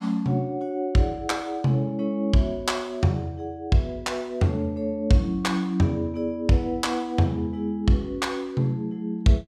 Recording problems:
none

